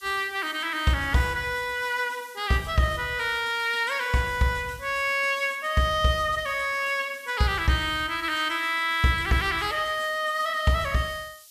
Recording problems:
hiss; SNR 23 dB

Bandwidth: 14.5 kHz